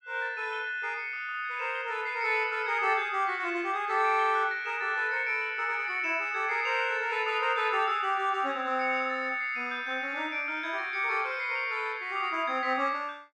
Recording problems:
none

